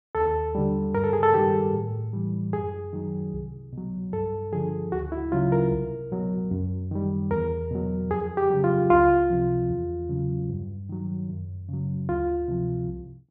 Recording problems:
none

